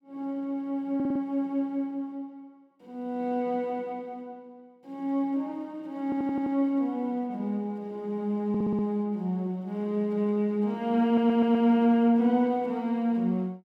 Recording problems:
stutter; 4 times, first at 1 s

